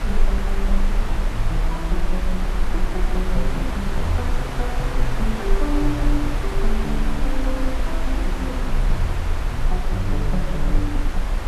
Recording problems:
background hiss; SNR 2 dB
rumble; below 38 Hz, strongest tone 20 Hz, SNR -3 dB

